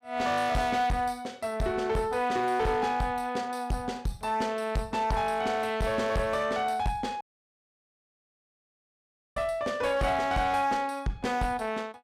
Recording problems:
distorted audio; hard clipping, uneven, signal-to-distortion ratio 10 dB
dropout; at 7 s for 2 s

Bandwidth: 15.5 kHz